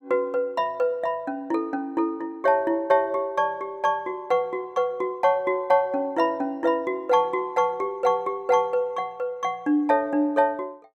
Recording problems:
none

